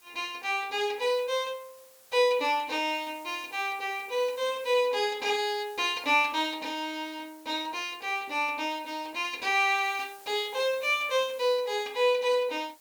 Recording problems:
hiss; slope -1 dB per octave, SNR 25 dB

